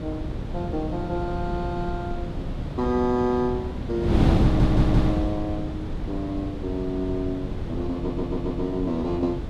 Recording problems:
wind on the microphone; below 240 Hz, SNR 0 dB
stutter; at 4.5 s and at 8 s

